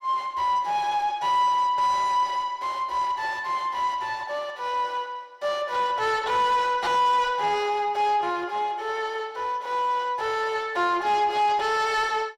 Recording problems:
distortion; soft clipping, signal-to-distortion ratio 11 dB

